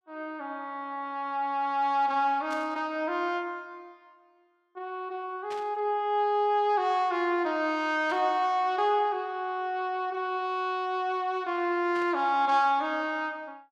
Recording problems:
static burst; 4 times, first at 2.5 s; peak -12 dB vs average level

